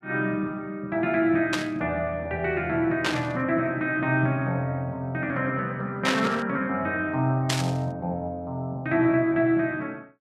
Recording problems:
static burst; 4 times, first at 1.5 s; peak +4 dB vs average level

